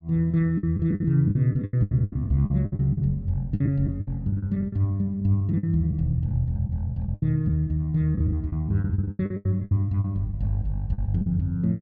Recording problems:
lost packets; 15% of the sound replaced, filled with the last packet

